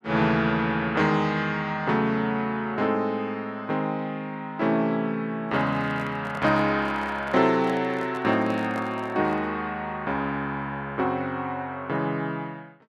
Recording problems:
handling noise; from 5.5 to 9.5 s; peak -8 dB vs average level

